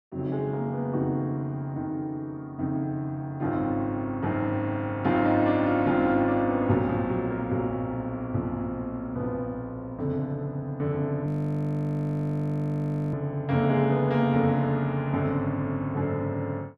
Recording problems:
frozen audio; at 11 s for 2 s

